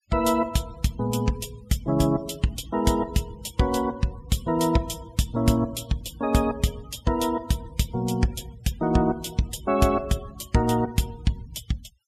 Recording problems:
noise reduction artefacts; signal-to-artefact ratio 23 dB

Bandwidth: 15 kHz